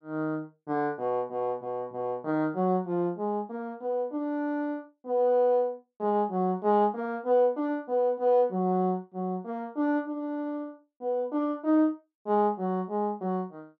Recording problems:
none

